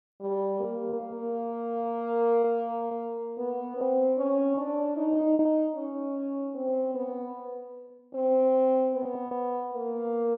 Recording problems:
packet loss; 5% of the sound replaced, filled with repeated pitch periods

